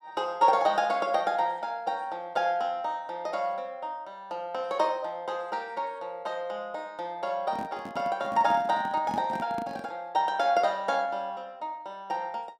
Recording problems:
microphone handling noise; from 7.5 to 10 s; peak -3 dB vs average level

